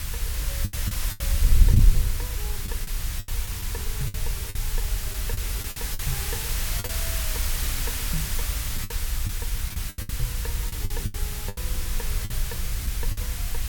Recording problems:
background hiss; slope +1 dB per octave, SNR -10 dB
rumble; below 90 Hz, SNR 6 dB
wind on the microphone; below 74 Hz, SNR -12 dB
packet loss; 10% of the sound replaced, filled with the last packet

